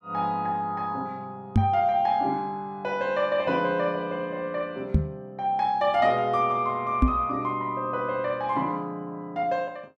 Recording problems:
microphone bump; at 1.5 s, at 5 s and at 7 s; peak +9 dB vs average level

